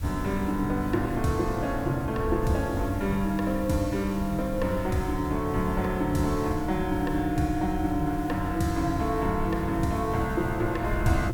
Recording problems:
background hiss; slope -2 dB per octave, SNR 21 dB
wind noise; below 98 Hz, SNR 9 dB

